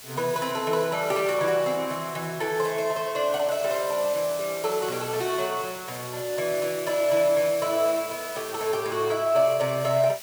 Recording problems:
hiss; slope +1 dB per octave, SNR 13 dB

